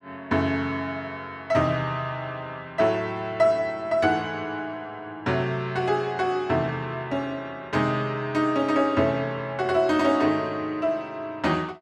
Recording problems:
none

